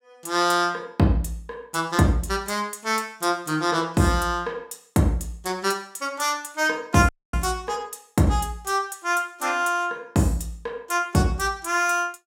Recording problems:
audio cutting out; at 7 s

